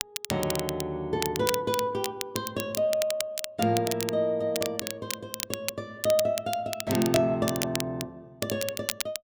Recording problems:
crackling; vinyl, SNR 5 dB

